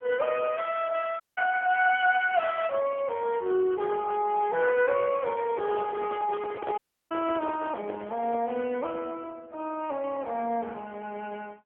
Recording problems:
phone line; 280 Hz to 2.9 kHz, AMR-NB
dropout; at 1 s and at 7 s
handling noise; from 5.5 to 8.5 s; peak -5 dB vs average level

